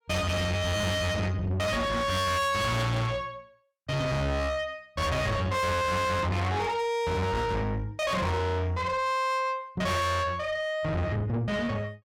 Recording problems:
distorted audio; soft clipping, signal-to-distortion ratio 6 dB

